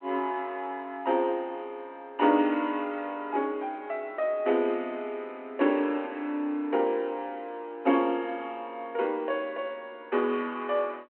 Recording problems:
phone line; 260 Hz to 3.2 kHz, G.726

